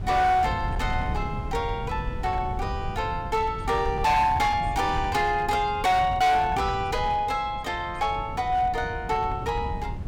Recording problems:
distorted audio; hard clipping, uneven, signal-to-distortion ratio 11 dB
wind noise; below 150 Hz, SNR 9 dB

